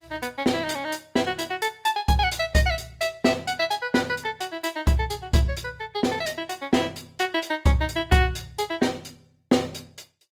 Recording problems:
lossy compression; Opus, log-spectral distance 4 dB

